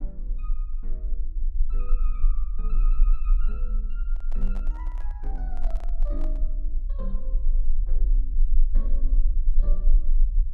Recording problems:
rumble; below 34 Hz, strongest tone 18 Hz, SNR -18 dB
microphone handling noise; from 4 to 6.5 s; peak +2 dB vs average level

